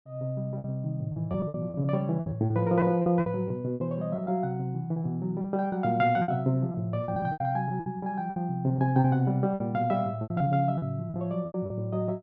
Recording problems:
packet loss; 13% of the sound replaced, filled with repeated pitch periods

